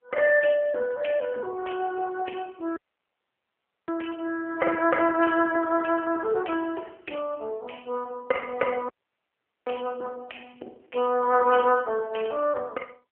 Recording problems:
phone line; 340 Hz to 2.8 kHz, AMR-NB
dropout; at 3 s for 1 s and at 9 s for 1 s

